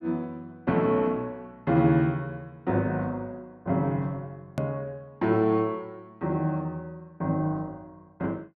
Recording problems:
treble missing; nothing above 6.8 kHz
edit click; at 4.5 s

